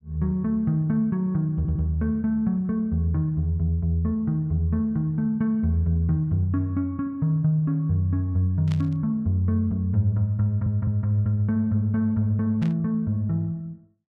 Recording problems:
stutter; at 1.5 s and at 10 s
burst of static; at 8.5 s and at 13 s; peak -13 dB vs average level

